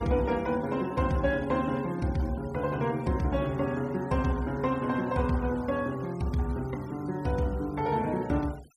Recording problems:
denoising artefacts; signal-to-artefact ratio 23 dB

